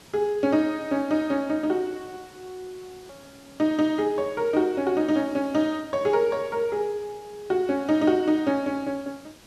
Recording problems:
background hiss; slope -3 dB per octave, SNR 25 dB
click at an edit; at 3 s

